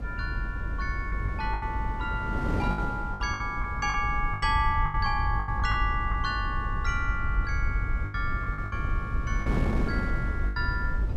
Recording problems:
low-frequency rumble; below 78 Hz, SNR 2 dB
wind on the microphone; below 380 Hz, SNR 6 dB
packet loss; 9% of the sound replaced, filled with the last packet

